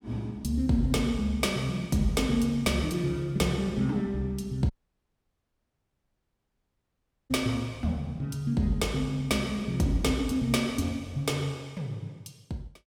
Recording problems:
audio cutting out; at 4.5 s for 2.5 s

